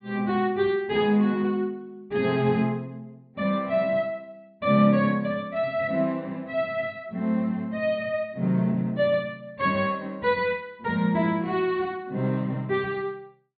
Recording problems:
treble missing; nothing above 4.6 kHz

